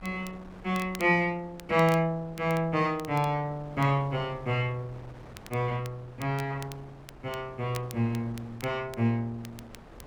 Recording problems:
wind noise; below 850 Hz, SNR 21 dB
crackle; vinyl, SNR 20 dB

